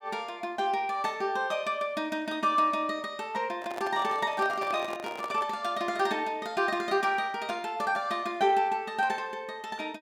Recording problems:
handling noise; from 3.5 to 5.5 s; peak -5 dB vs average level

